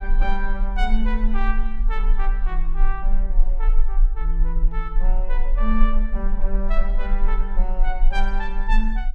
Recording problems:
low-frequency rumble; below 32 Hz, strongest tone 22 Hz, SNR -6 dB

